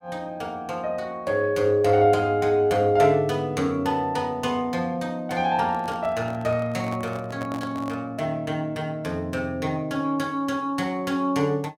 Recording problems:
handling noise; from 5.5 to 8 s; peak -8 dB vs average level

